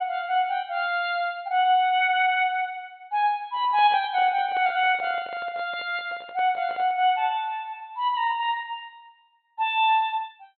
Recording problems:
low-pass filter; nothing above 4.3 kHz
microphone handling noise; from 3.5 to 7 s; peak -12 dB vs average level

